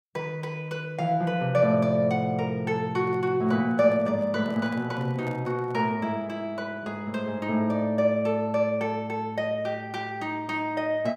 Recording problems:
microphone handling noise; from 3 to 6 s; peak -10 dB vs average level

